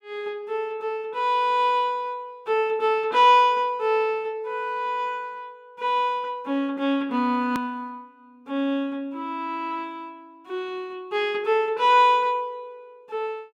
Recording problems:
hard cut with a click; at 7.5 s

